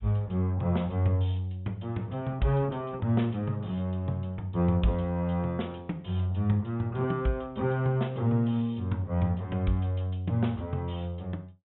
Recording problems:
low-pass filter; nothing above 3.7 kHz

